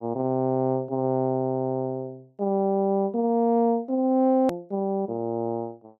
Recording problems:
edit click; at 4.5 s

